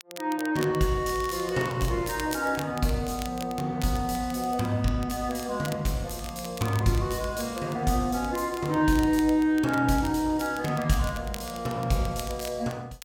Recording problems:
crackling; vinyl, SNR 17 dB

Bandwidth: 16.5 kHz